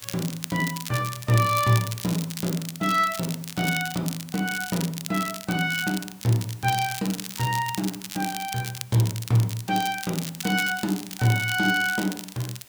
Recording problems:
background hiss; slope -1 dB per octave, SNR 23 dB
crackling; vinyl, SNR 9 dB

